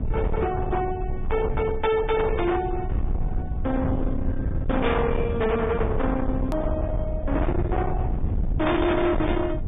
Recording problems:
treble missing; nothing above 3.2 kHz
lossy codec; Vorbis, then Vorbis, log-spectral distance 2 dB
distorted audio; soft clipping, signal-to-distortion ratio 7 dB
rumble; below 190 Hz, SNR 3 dB
edit click; at 6.5 s

